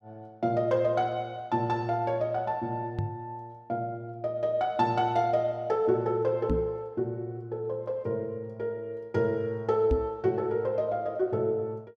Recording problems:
microphone bump; at 3 s, at 6.5 s and at 10 s; peak +4 dB vs average level

